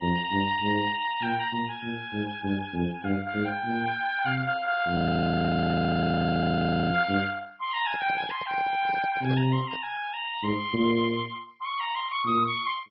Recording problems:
codec artefacts; Vorbis, then MP2, log-spectral distance 4 dB, nothing above 4.2 kHz
audio freezing; at 5 s for 2 s
handling noise; from 8 to 10 s; peak -8 dB vs average level

